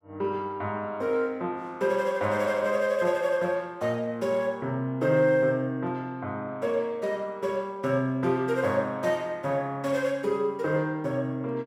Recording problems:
none

